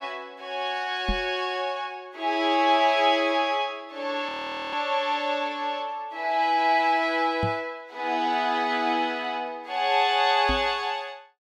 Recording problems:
microphone bump; at 1 s, at 7.5 s and at 10 s; peak 0 dB vs average level
audio freezing; at 4.5 s

